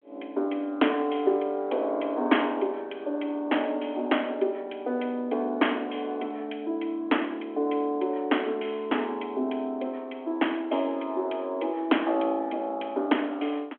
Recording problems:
phone line; 240 Hz to 3.4 kHz, G.726

